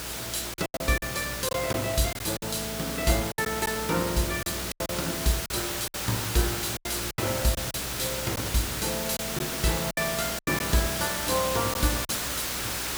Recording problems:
hum; 60 Hz, harmonics up to 600 Hz, SNR 13 dB
hiss; slope 0 dB per octave, SNR 2 dB
lost packets; 8% of the sound replaced, filled with silence

